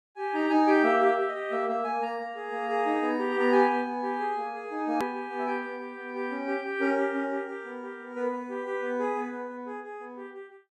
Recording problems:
click at an edit; at 5 s

